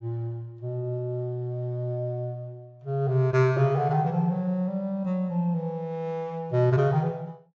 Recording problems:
treble cut off; nothing above 8 kHz

